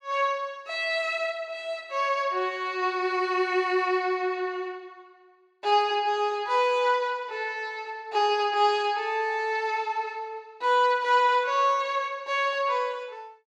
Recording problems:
none

